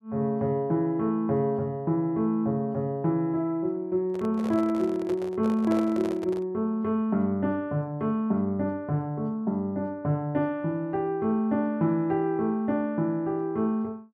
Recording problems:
handling noise; from 4 to 6.5 s; peak -5 dB vs average level

